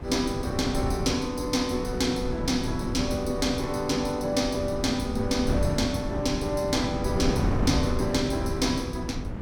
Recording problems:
wind on the microphone; below 250 Hz, SNR 4 dB

